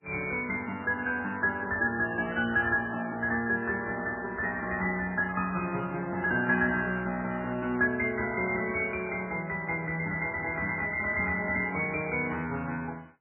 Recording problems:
codec artefacts; MP3, log-spectral distance 4 dB

